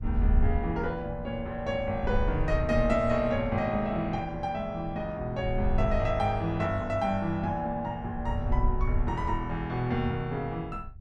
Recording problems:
wind noise; below 72 Hz, SNR 5 dB

